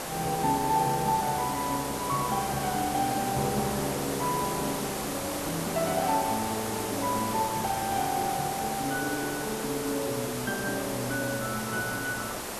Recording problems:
hiss; slope -4 dB per octave, SNR 3 dB

